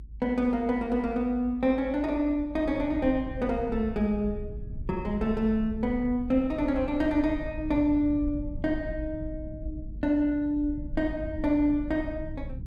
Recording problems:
rumble; below 92 Hz, SNR 12 dB

